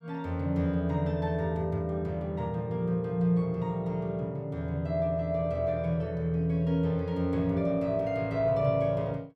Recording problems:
none

